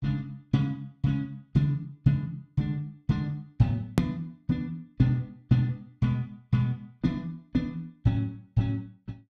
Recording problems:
click at an edit; at 4 s

